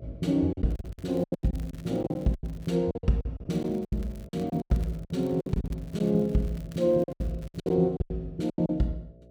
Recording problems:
hum; 60 Hz, harmonics up to 660 Hz, SNR 22 dB
lost packets; 17% of the sound replaced, filled with silence
crackle; from 0.5 to 2.5 s and from 3.5 to 8 s; loose cable, SNR 28 dB

